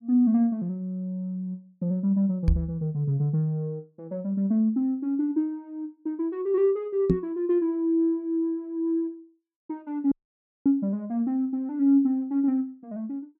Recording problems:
microphone thump; at 2.5 s and at 7 s; peak +7 dB vs average level
audio cutting out; at 10 s for 0.5 s

